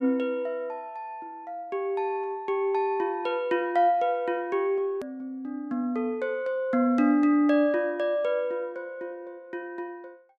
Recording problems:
hard cut with a click; at 5 s

